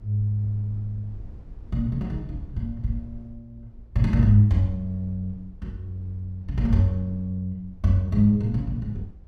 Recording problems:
rumble; below 70 Hz, SNR 20 dB

